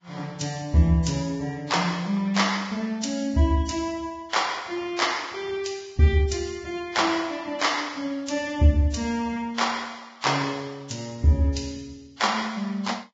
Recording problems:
codec artefacts; Vorbis, log-spectral distance 4 dB, nothing above 7.3 kHz

